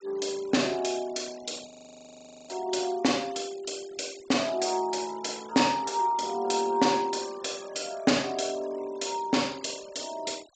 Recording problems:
treble cut off; nothing above 8 kHz
denoising artefacts; signal-to-artefact ratio 20 dB
frozen audio; at 1.5 s for 1 s

